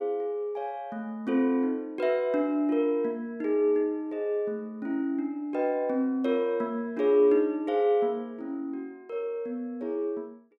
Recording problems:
none

